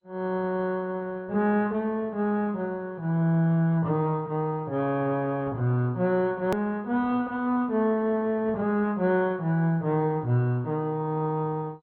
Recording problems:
lossy codec; MP2, log-spectral distance 2 dB, nothing above 17.7 kHz
hard cut with a click; at 6.5 s

